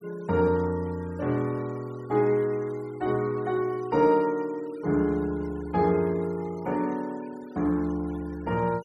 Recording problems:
denoising artefacts; signal-to-artefact ratio 24 dB

